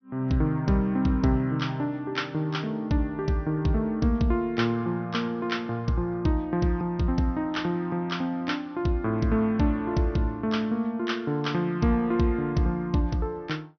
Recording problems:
low-pass filter; nothing above 6.1 kHz

